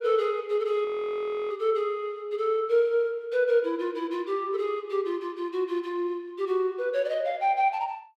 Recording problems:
frozen audio; at 1 s for 0.5 s

